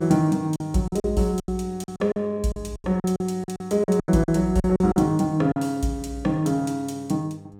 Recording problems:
electrical hum; 50 Hz, harmonics up to 900 Hz, SNR 21 dB
packet loss; 12% of the sound replaced, filled with silence

